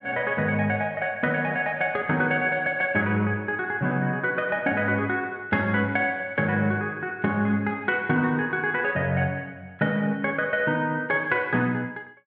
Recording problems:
low-pass filter; nothing above 5.5 kHz

